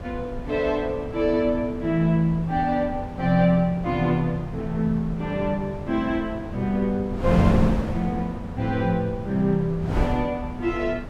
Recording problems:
wind on the microphone; below 280 Hz, SNR 8 dB

